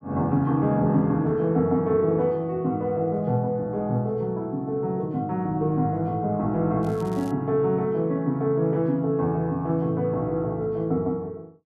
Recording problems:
crackle; at 7 s; loose cable, SNR 27 dB

